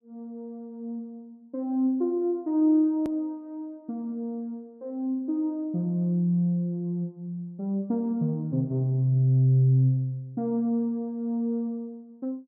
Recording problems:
edit click; at 3 s

